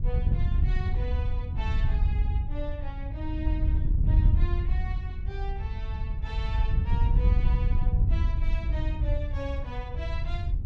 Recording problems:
wind on the microphone; below 82 Hz, SNR -12 dB

